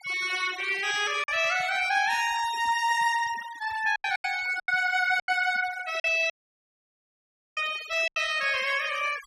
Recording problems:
denoising artefacts; signal-to-artefact ratio 16 dB
lost packets; 6% of the sound replaced, filled with silence
audio cutting out; at 6.5 s for 1.5 s

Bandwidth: 14.5 kHz